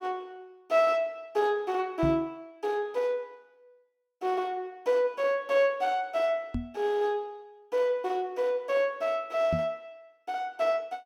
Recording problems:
microphone thump; at 2 s, at 6.5 s and at 9.5 s; peak +1 dB vs average level

